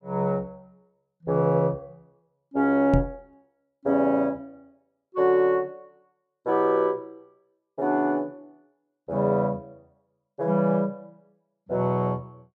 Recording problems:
microphone thump; at 3 s; peak +5 dB vs average level

